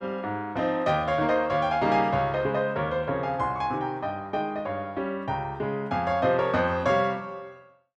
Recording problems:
none

